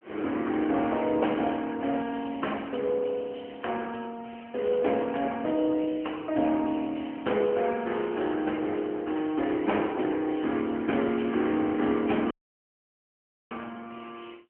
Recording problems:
telephone audio; 220 Hz to 3.1 kHz, AMR-NB
audio cutting out; at 12 s for 1 s

